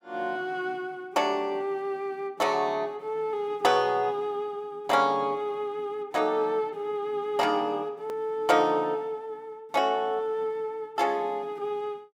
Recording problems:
hard cut with a click; at 8 s

